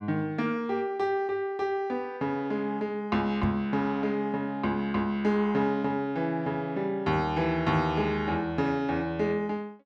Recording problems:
microphone thump; at 3.5 s; peak +2 dB vs average level

